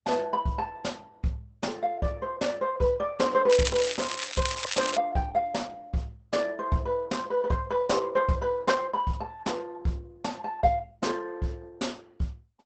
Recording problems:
codec artefacts; Opus, log-spectral distance 4 dB, nothing above 8 kHz
crackle; from 3.5 to 5 s; loose cable, SNR 4 dB

